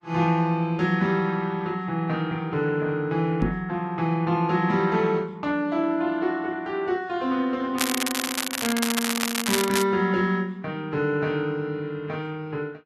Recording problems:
lossy compression; Vorbis, log-spectral distance 3 dB
microphone thump; at 3.5 s; peak +3 dB vs average level
crackling; from 8 to 10 s; loose cable, SNR 1 dB

